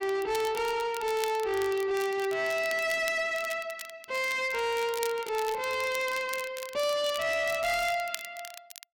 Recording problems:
distortion; soft clipping, signal-to-distortion ratio 10 dB
crackle; vinyl, SNR 14 dB

